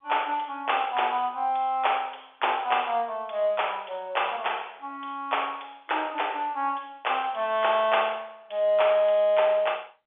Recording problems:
telephone audio; 320 Hz to 3.6 kHz, G.711

